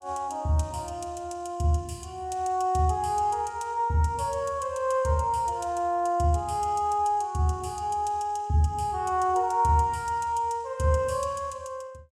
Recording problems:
none

